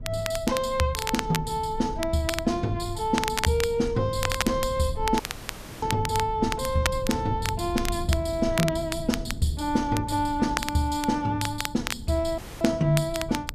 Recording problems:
rumble; below 110 Hz, SNR 12 dB
crackling; vinyl, SNR 7 dB
dropout; at 5 s for 0.5 s and at 12 s

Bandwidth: 14.5 kHz